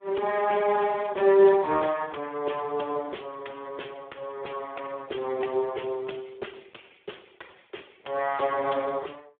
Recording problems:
telephone audio; 320 Hz to 3.4 kHz, Speex

